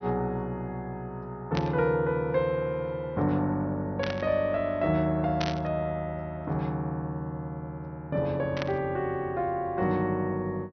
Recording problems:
treble missing; nothing above 6.2 kHz
burst of static; 4 times, first at 1.5 s; peak 0 dB vs average level

